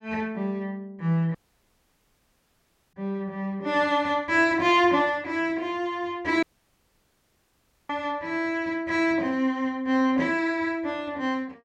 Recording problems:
dropout; at 1.5 s for 1.5 s and at 6.5 s for 1.5 s

